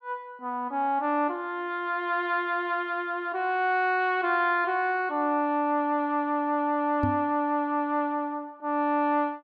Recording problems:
microphone thump; at 7 s; peak +2 dB vs average level

